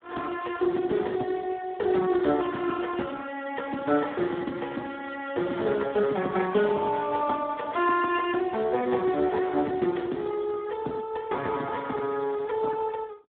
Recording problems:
telephone audio; 240 Hz to 3.7 kHz, Speex

